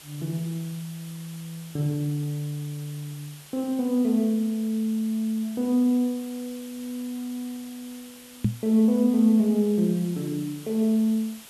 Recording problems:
background hiss; slope 0 dB per octave, SNR 20 dB
microphone bump; at 8.5 s; peak +5 dB vs average level

